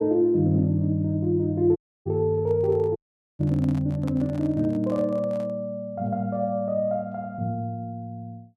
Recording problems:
audio cutting out; at 2 s and at 3 s
microphone handling noise; from 2.5 to 5.5 s; peak -11 dB vs average level

